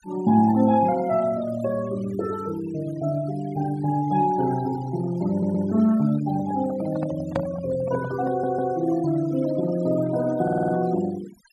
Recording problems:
noise reduction artefacts; signal-to-artefact ratio 18 dB
audio stuttering; at 5.5 s, at 8.5 s and at 10 s
handling noise; from 6.5 to 8.5 s; peak 0 dB vs average level

